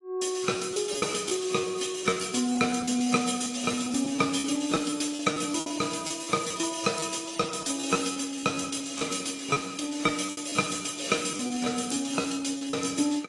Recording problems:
lossy codec; AAC, log-spectral distance 6 dB, nothing above 10.1 kHz
lost packets; 11% of the sound replaced, filled with repeated pitch periods

